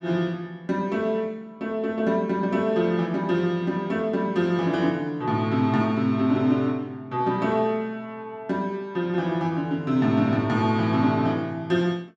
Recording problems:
none

